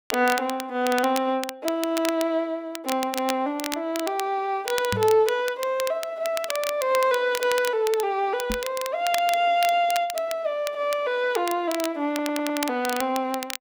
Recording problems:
crackling; vinyl, SNR 10 dB
microphone thump; at 5 s and at 8.5 s; peak -2 dB vs average level
stutter; at 12 s

